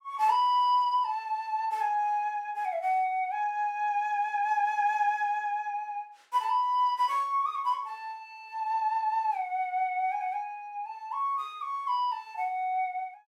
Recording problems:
none

